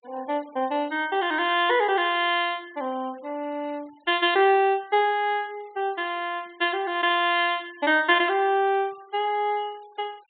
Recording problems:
treble cut off; nothing above 4 kHz
denoising artefacts; signal-to-artefact ratio 28 dB

